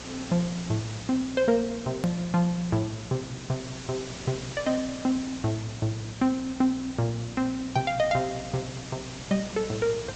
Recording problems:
treble missing; nothing above 8 kHz
hum; 60 Hz, harmonics up to 540 Hz, SNR 18 dB
background hiss; slope -2 dB per octave, SNR 12 dB
edit click; at 2 s

